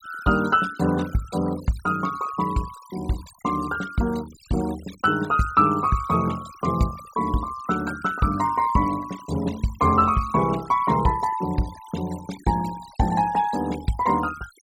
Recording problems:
noise reduction artefacts; signal-to-artefact ratio 19 dB

